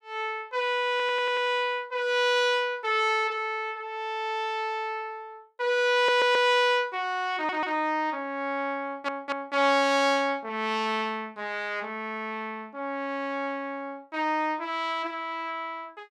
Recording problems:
audio stuttering; 4 times, first at 1 s

